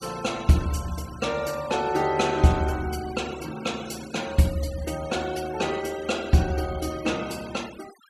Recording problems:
denoising artefacts; signal-to-artefact ratio 17 dB

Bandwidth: 14.5 kHz